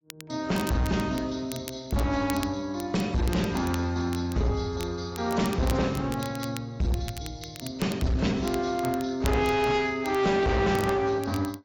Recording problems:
lossy compression; AAC, log-spectral distance 3 dB
distortion; hard clipping, uneven, signal-to-distortion ratio 7 dB
crackle; vinyl, SNR 16 dB

